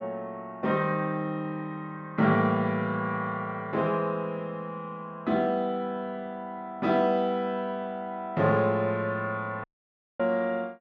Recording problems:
dropout; at 9.5 s for 0.5 s

